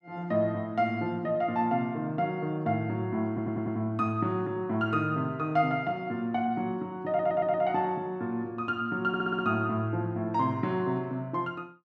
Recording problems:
stutter; at 3.5 s, at 7 s and at 9 s

